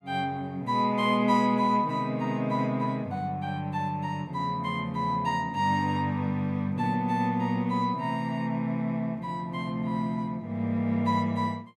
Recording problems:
none

